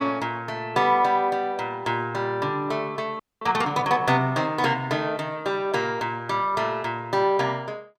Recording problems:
frozen audio; at 3 s

